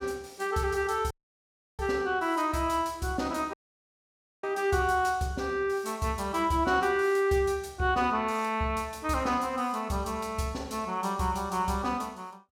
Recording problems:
dropout; at 1 s for 0.5 s and at 3.5 s for 1 s

